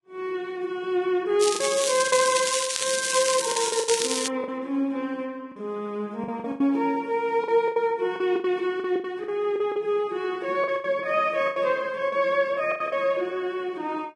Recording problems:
lossy codec; Vorbis, log-spectral distance 4 dB
packet loss; 9% of the sound replaced, filled with the last packet
crackle; from 1.5 to 4.5 s; loose cable, SNR 1 dB

